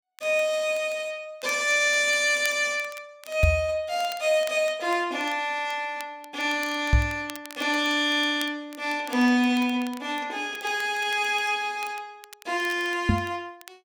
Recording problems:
crackling; vinyl, SNR 21 dB
microphone thump; at 3.5 s, at 7 s and at 13 s; peak +8 dB vs average level

